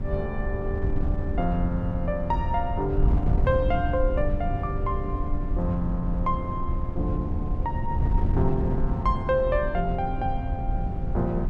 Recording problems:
wind noise; below 100 Hz, SNR 0 dB

